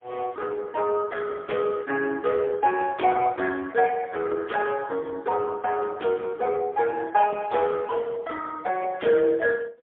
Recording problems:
telephone audio; 280 Hz to 2.5 kHz, AMR-NB, then MP3

